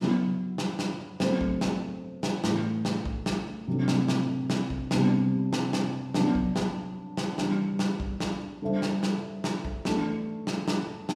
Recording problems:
none

